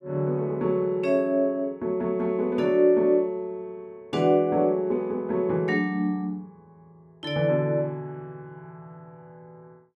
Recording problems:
none

